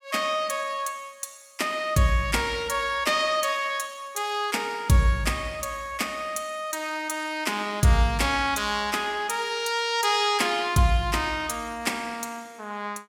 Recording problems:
none

